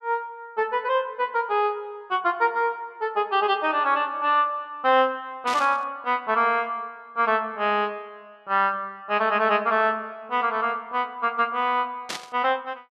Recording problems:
static burst; at 5.5 s and at 12 s; peak -3 dB vs average level

